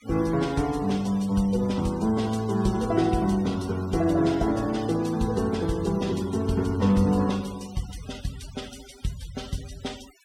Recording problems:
noise reduction artefacts; signal-to-artefact ratio 19 dB

